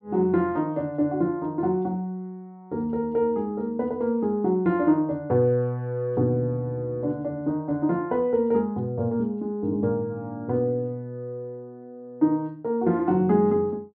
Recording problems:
low-pass filter; nothing above 5.5 kHz

